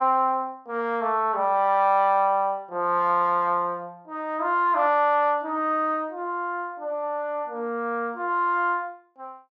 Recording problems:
treble missing; nothing above 8 kHz

